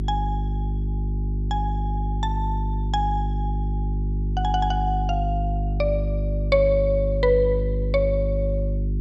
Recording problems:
hum; 50 Hz, harmonics up to 400 Hz, SNR 0 dB

